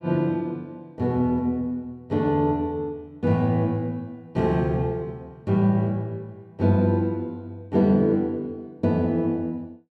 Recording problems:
none

